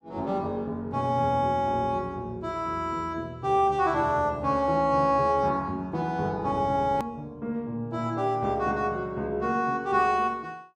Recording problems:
edit click; at 7 s

